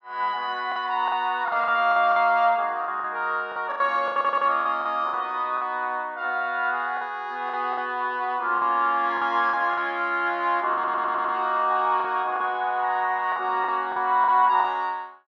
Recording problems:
packet loss; 9% of the sound replaced, filled with the last packet
stutter; at 4 s and at 11 s

